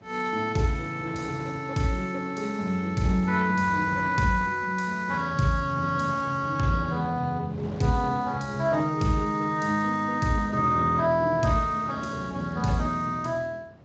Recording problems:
codec artefacts; Speex, log-spectral distance 3 dB, nothing above 7.3 kHz
wind on the microphone; below 620 Hz, SNR 20 dB

